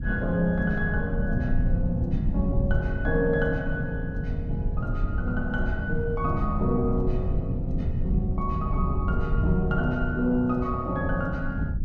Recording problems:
rumble; below 120 Hz, SNR 2 dB

